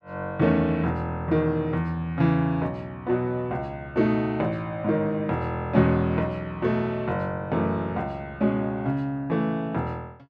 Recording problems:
none

